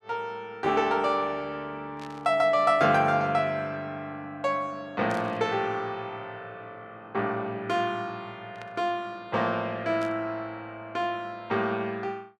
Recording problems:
static burst; 4 times, first at 2 s; peak -13 dB vs average level

